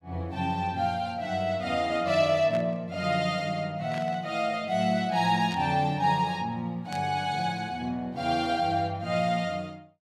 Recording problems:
burst of static; 4 times, first at 2.5 s; peak -9 dB vs average level

